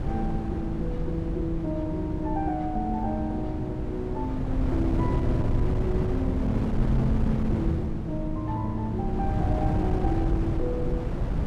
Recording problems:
wind noise; below 180 Hz, SNR -1 dB

